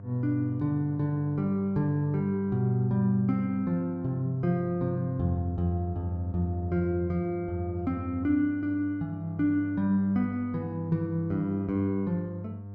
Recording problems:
mains hum; 50 Hz, harmonics up to 900 Hz, SNR 12 dB

